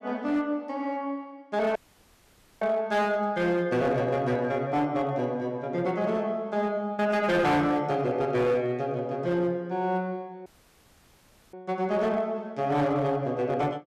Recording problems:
distortion; hard clipping, signal-to-distortion ratio 12 dB
dropout; at 2 s for 1 s and at 10 s for 1 s

